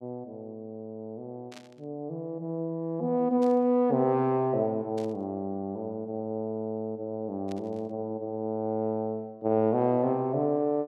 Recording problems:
static burst; 4 times, first at 1.5 s; peak -14 dB vs average level

